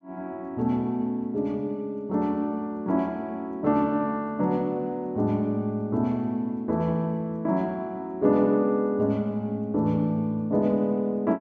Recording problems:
none

